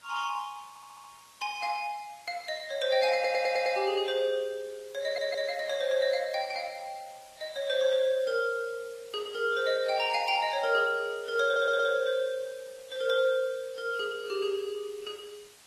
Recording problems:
lossy codec; Opus, then Vorbis, log-spectral distance 5 dB, nothing above 13.8 kHz
hiss; slope 0 dB per octave, SNR 25 dB
stutter; 4 times, first at 0.5 s

